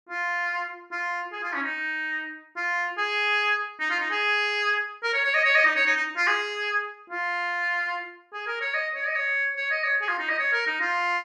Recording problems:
none

